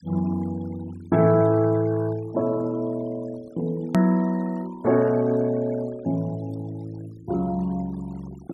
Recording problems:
denoising artefacts; signal-to-artefact ratio 24 dB
edit click; at 4 s

